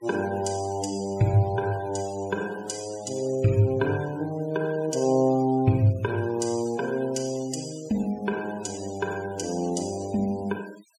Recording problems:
denoising artefacts; signal-to-artefact ratio 21 dB

